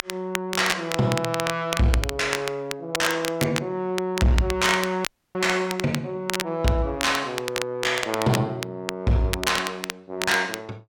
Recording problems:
distortion; hard clipping, uneven, signal-to-distortion ratio 10 dB
crackling; vinyl, SNR 6 dB
audio cutting out; at 5 s

